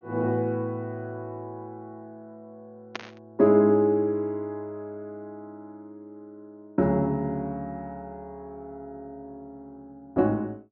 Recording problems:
treble cut off; nothing above 6.7 kHz
burst of static; at 3 s; peak -3 dB vs average level

